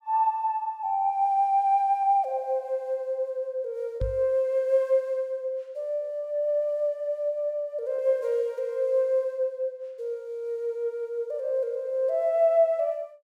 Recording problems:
packet loss; 0.5% of the sound replaced, filled with repeated pitch periods
knock on the microphone; at 4 s; peak -1 dB vs average level

